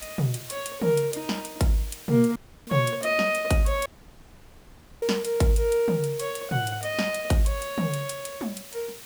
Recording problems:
hiss; slope 0 dB per octave, SNR 16 dB
dropout; at 2.5 s and at 4 s for 1 s

